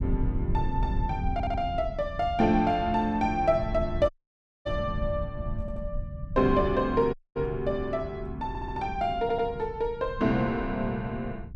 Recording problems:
low-frequency rumble; below 110 Hz, SNR 8 dB
stutter; 4 times, first at 1.5 s
dropout; at 4 s for 0.5 s and at 7 s

